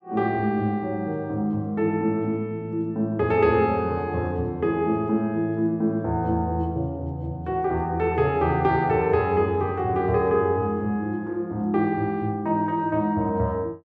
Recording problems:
none

